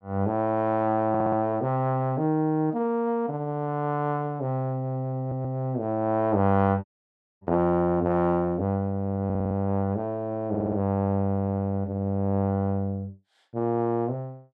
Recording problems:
stutter; 4 times, first at 1 s
audio cutting out; at 7 s for 0.5 s

